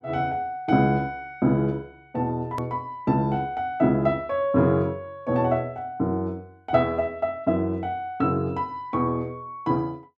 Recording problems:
click at an edit; at 2.5 s

